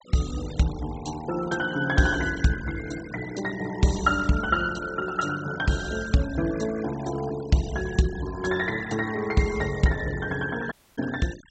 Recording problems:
treble cut off; nothing above 8 kHz
noise reduction artefacts; signal-to-artefact ratio 17 dB
audio cutting out; at 11 s

